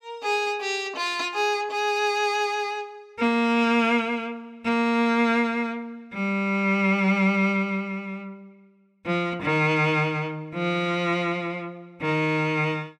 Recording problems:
none

